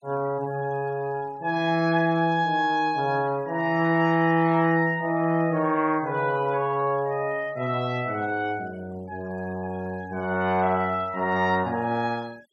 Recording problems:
noise reduction artefacts; signal-to-artefact ratio 26 dB

